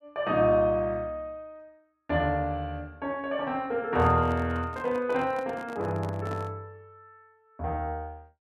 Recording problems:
handling noise; from 4 to 6.5 s; peak -8 dB vs average level

